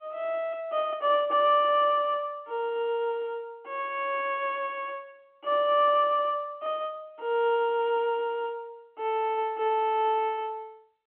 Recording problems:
telephone audio; 260 Hz to 3.3 kHz, G.711

